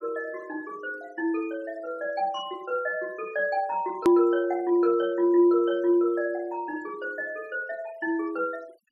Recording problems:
denoising artefacts; signal-to-artefact ratio 25 dB
edit click; at 4 s

